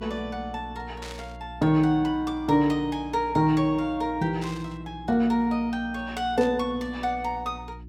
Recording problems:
electrical hum; 60 Hz, harmonics up to 360 Hz, SNR 18 dB
burst of static; at 1 s, at 4.5 s and at 6.5 s; peak -10 dB vs average level

